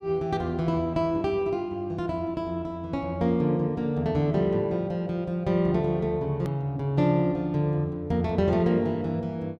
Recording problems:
hard cut with a click; at 6.5 s

